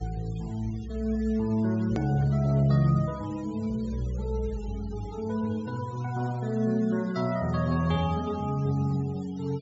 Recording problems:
low-pass filter; nothing above 8 kHz
denoising artefacts; signal-to-artefact ratio 23 dB
hard cut with a click; at 2 s

